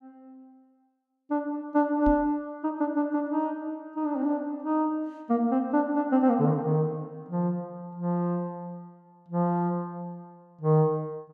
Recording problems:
microphone thump; at 2 s; peak -1 dB vs average level

